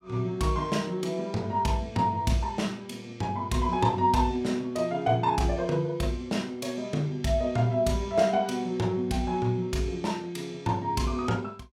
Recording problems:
none

